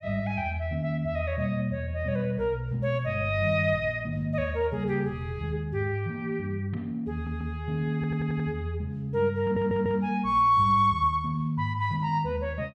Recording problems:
audio stuttering; at 7 s, at 8 s and at 9.5 s

